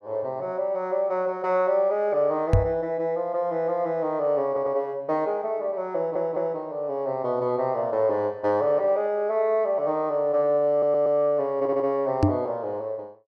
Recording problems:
knock on the microphone; at 2.5 s and at 12 s; peak +8 dB vs average level
stutter; 4 times, first at 4.5 s

